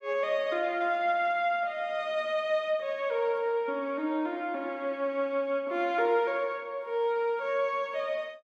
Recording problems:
none

